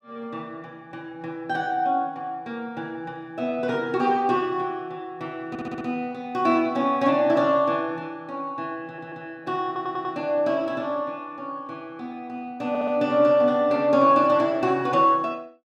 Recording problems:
stutter; 4 times, first at 5.5 s

